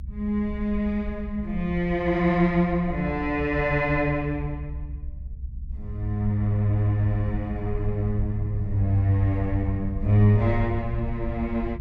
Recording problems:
low-frequency rumble; below 68 Hz, SNR 10 dB

